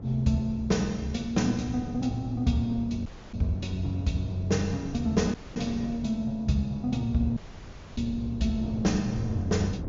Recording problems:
treble cut off; nothing above 7.2 kHz
wind on the microphone; below 250 Hz, SNR 11 dB
dropout; at 3 s, at 5.5 s and at 7.5 s for 0.5 s

